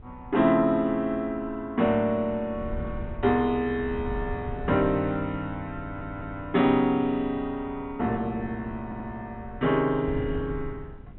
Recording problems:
treble cut off; nothing above 3.8 kHz
wind on the microphone; below 130 Hz, SNR 15 dB
stutter; at 6 s and at 9 s

